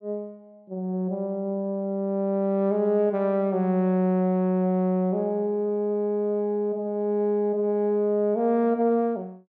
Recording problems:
treble cut off; nothing above 8 kHz

